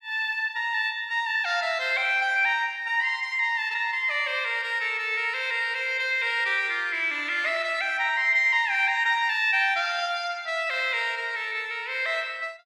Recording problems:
none

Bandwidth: 12.5 kHz